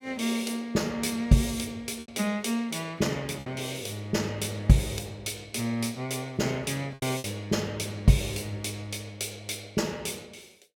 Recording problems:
packet loss; 3% of the sound replaced, filled with repeated pitch periods

